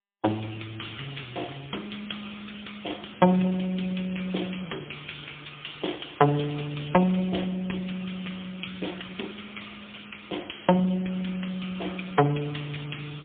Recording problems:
telephone audio; 150 Hz to 3.6 kHz, AMR-NB, then MP3

